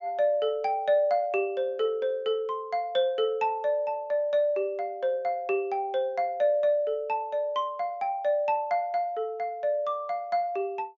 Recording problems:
treble missing; nothing above 7.3 kHz

